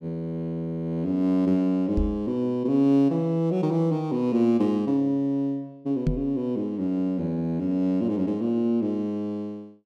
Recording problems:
microphone thump; at 2 s and at 6 s; peak +4 dB vs average level

